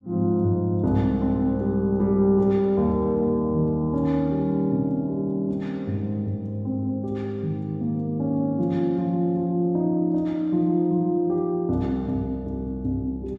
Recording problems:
none

